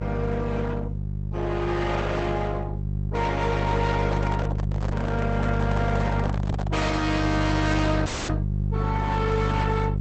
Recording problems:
codec artefacts; Opus, log-spectral distance 3 dB, nothing above 8 kHz
distorted audio; hard clipping, uneven, signal-to-distortion ratio 6 dB
hum; 50 Hz, harmonics up to 400 Hz, SNR 0 dB
microphone handling noise; from 4 to 8 s; peak -1 dB vs average level
dropout; at 8 s

